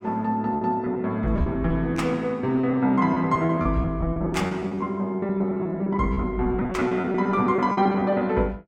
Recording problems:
packet loss; 15% of the sound replaced, filled with repeated pitch periods

